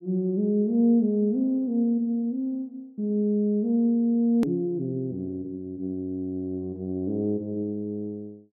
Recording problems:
edit click; at 4.5 s

